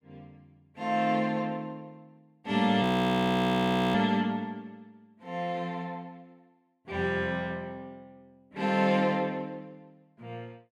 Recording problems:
audio freezing; at 3 s for 1 s

